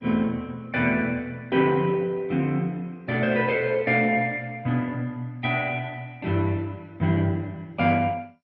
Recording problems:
codec artefacts; MP2, log-spectral distance 2 dB, nothing above 4.9 kHz

